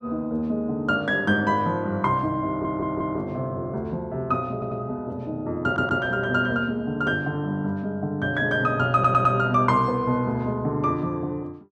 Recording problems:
audio stuttering; 4 times, first at 2.5 s

